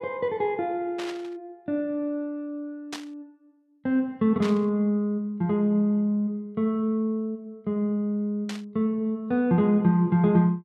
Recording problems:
burst of static; 4 times, first at 1 s; peak -6 dB vs average level

